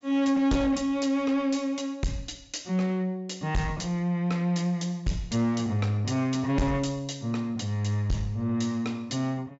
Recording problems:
low-pass filter; nothing above 8 kHz
distortion; soft clipping, signal-to-distortion ratio 8 dB

